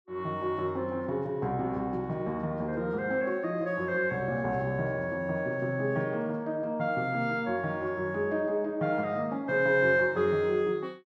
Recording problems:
none

